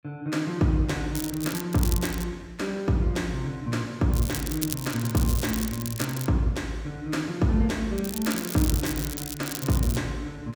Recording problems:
crackling; 4 times, first at 1 s; loose cable, SNR 7 dB

